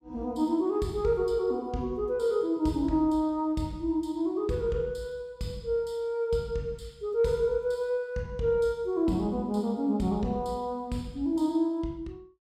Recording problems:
none

